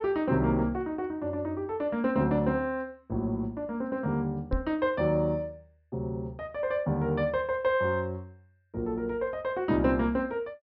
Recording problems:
treble missing; nothing above 5.5 kHz
microphone thump; at 4.5 s; peak +2 dB vs average level

